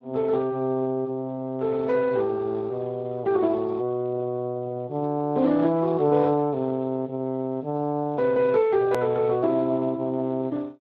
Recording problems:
codec artefacts; Speex, log-spectral distance 2 dB, nothing above 13.1 kHz
click at an edit; at 9 s

